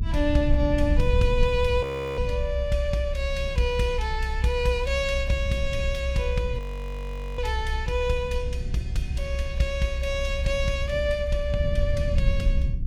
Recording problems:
low-frequency rumble; below 66 Hz, SNR 1 dB
frozen audio; at 2 s and at 6.5 s for 1 s

